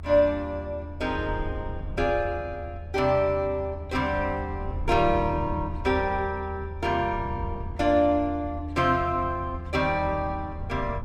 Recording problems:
low-frequency rumble; below 84 Hz, strongest tone 80 Hz, SNR 9 dB

